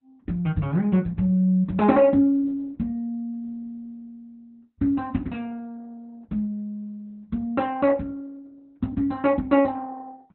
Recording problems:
codec artefacts; Opus, log-spectral distance 2 dB, nothing above 4.1 kHz

